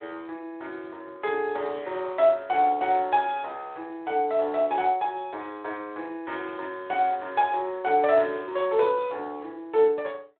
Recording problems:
telephone audio; 300 Hz to 3.8 kHz, Speex

